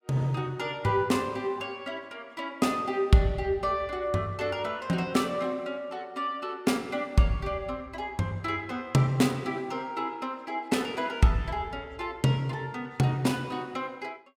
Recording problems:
none

